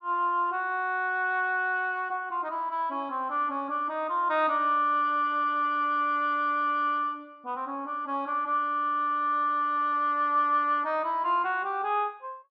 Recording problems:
none

